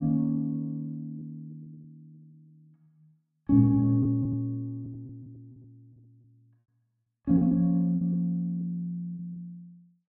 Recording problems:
lost packets; 8% of the sound replaced, filled with repeated pitch periods

